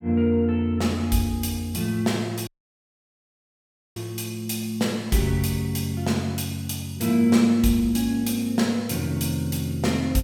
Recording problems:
dropout; at 2.5 s for 1.5 s

